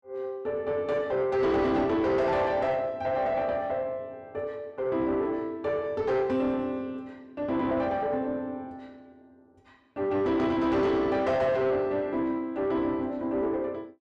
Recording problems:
distorted audio; soft clipping, signal-to-distortion ratio 10 dB

